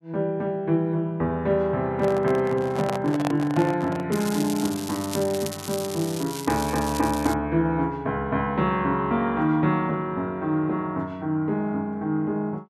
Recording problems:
microphone handling noise; from 2 to 4 s; peak 0 dB vs average level
crackling; from 4 to 7.5 s; loose cable, SNR 11 dB

